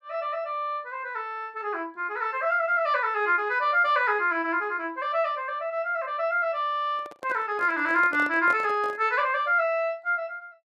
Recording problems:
microphone handling noise; from 7 to 9 s; peak -7 dB vs average level

